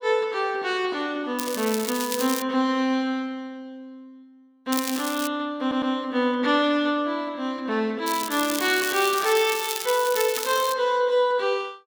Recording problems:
crackling; from 1.5 to 2.5 s, at 4.5 s and from 8 to 11 s; loose cable, SNR 7 dB
audio stuttering; at 5.5 s

